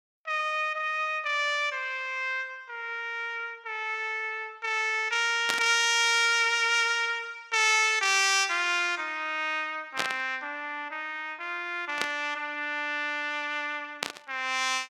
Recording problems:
static burst; 4 times, first at 5.5 s; peak +2 dB vs average level

